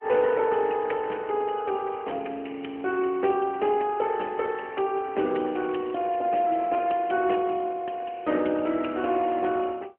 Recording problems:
phone line; 240 Hz to 3.1 kHz, AMR-NB

